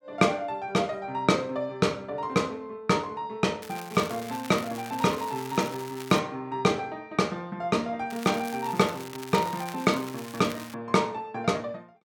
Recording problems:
crackle; from 3.5 to 6 s and from 8 to 11 s; loose cable, SNR 15 dB

